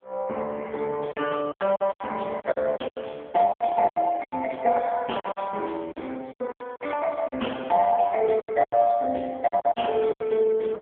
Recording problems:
phone line; 280 Hz to 3.3 kHz, AMR-NB
lost packets; 13% of the sound replaced, filled with silence

